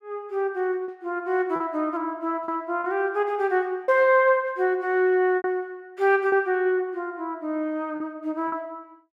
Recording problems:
lost packets; 5% of the sound replaced, filled with repeated pitch periods

